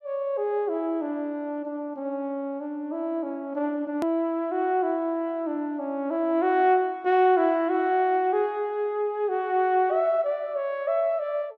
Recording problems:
click at an edit; at 4 s

